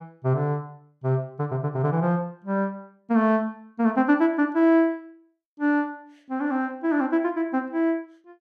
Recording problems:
none

